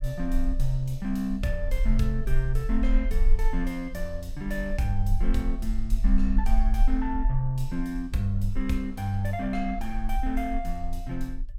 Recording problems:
rumble; below 40 Hz, strongest tone 22 Hz, SNR 1 dB

